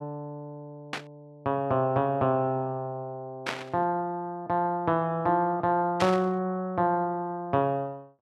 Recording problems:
burst of static; at 1 s, at 3.5 s and at 6 s; peak +1 dB vs average level

